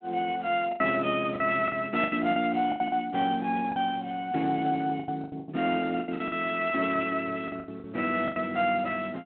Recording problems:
telephone audio; 220 Hz to 3.7 kHz, Speex
packet loss; 12% of the sound replaced, filled with the last packet

